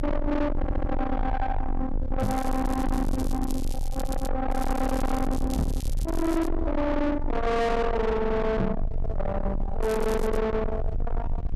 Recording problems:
distortion; soft clipping, signal-to-distortion ratio 7 dB
low-frequency rumble; below 300 Hz, strongest tone 22 Hz, SNR 3 dB
stutter; at 0.5 s and at 4 s
crackle; from 2 to 4.5 s, from 4.5 to 6.5 s and at 10 s; loose cable, SNR 19 dB
microphone bump; at 2 s, at 5.5 s and at 8.5 s; peak +6 dB vs average level

